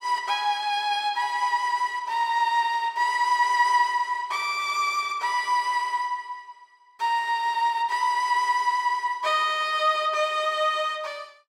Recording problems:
none

